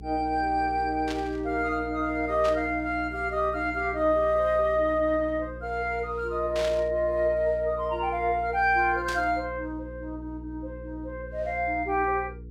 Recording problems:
hum; 60 Hz, harmonics up to 480 Hz, SNR 15 dB
static burst; 4 times, first at 1 s; peak -5 dB vs average level

